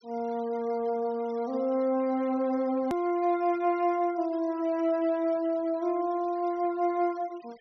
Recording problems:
treble cut off; nothing above 6.1 kHz
denoising artefacts; signal-to-artefact ratio 26 dB
edit click; at 3 s

